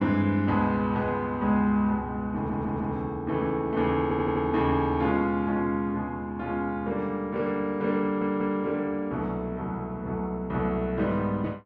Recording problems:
audio stuttering; at 2.5 s, at 4 s and at 8 s

